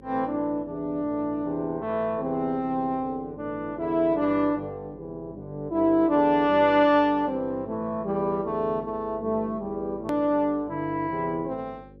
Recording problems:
hum; 50 Hz, harmonics up to 550 Hz, SNR 23 dB
hard cut with a click; at 10 s

